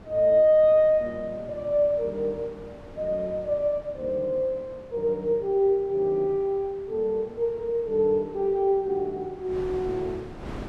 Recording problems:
wind noise; below 620 Hz, SNR 20 dB

